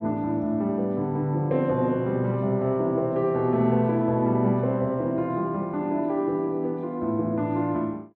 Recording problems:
none

